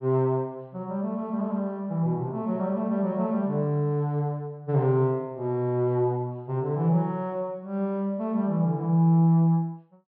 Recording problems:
low-pass filter; nothing above 5.5 kHz

